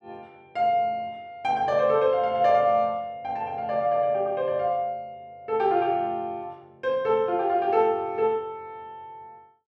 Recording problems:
none

